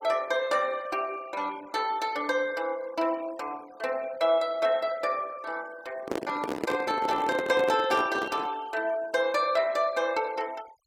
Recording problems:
noise reduction artefacts; signal-to-artefact ratio 23 dB
microphone handling noise; from 6 to 8.5 s; peak +2 dB vs average level

